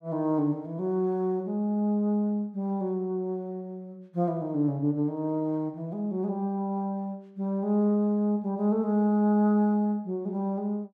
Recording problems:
none

